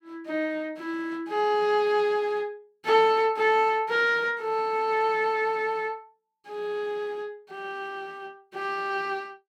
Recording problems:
none

